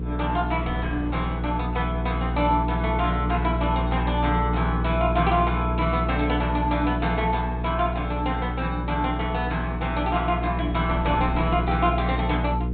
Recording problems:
treble missing; nothing above 4 kHz
hum; 60 Hz, harmonics up to 480 Hz, SNR 2 dB
wind on the microphone; below 510 Hz, SNR 19 dB

